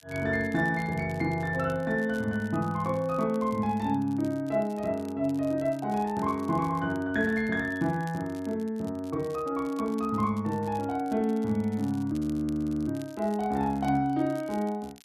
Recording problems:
crackling; vinyl, SNR 26 dB
audio freezing; at 12 s for 0.5 s

